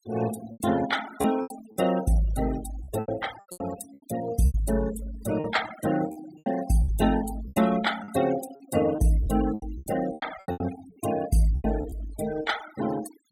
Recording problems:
denoising artefacts; signal-to-artefact ratio 12 dB
packet loss; 12% of the sound replaced, filled with repeated pitch periods

